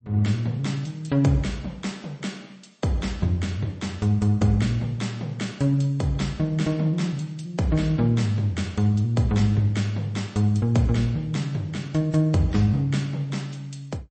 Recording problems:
lossy compression; MP3, log-spectral distance 2 dB, nothing above 8.2 kHz

